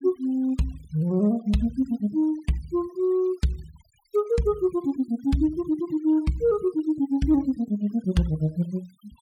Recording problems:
denoising artefacts; signal-to-artefact ratio 28 dB

